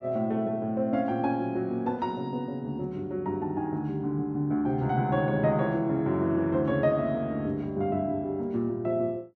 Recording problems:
none

